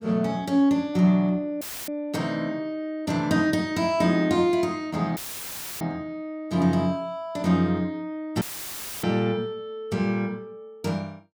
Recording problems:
audio cutting out; at 1.5 s, at 5 s for 0.5 s and at 8.5 s for 0.5 s; filled with static

